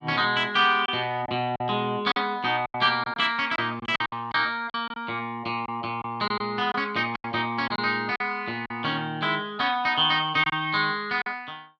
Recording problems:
packet loss; 8% of the sound replaced, filled with silence

